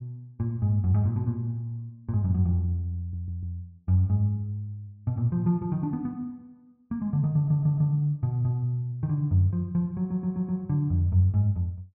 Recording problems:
low-pass filter; nothing above 6.4 kHz
audio stuttering; at 3 s, at 7.5 s and at 10 s

